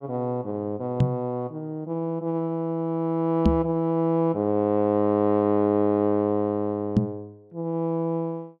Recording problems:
microphone thump; at 1 s, at 3.5 s and at 7 s; peak +9 dB vs average level

